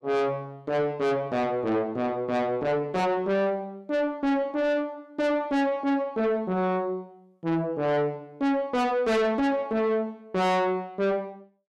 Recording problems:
distorted audio; soft clipping, signal-to-distortion ratio 6 dB

